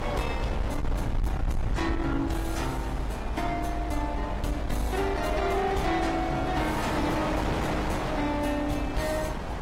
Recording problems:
lossy compression; AAC, log-spectral distance 2 dB, nothing above 15.5 kHz
distorted audio; soft clipping, signal-to-distortion ratio 11 dB
low-frequency rumble; below 78 Hz, SNR 5 dB
wind noise; below 1.1 kHz, SNR 3 dB

